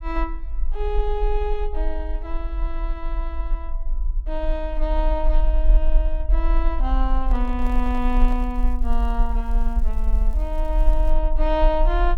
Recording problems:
rumble; below 42 Hz, SNR -4 dB
handling noise; from 7 to 8.5 s; peak -9 dB vs average level
crackling; from 7.5 to 11 s; loose cable, SNR 28 dB

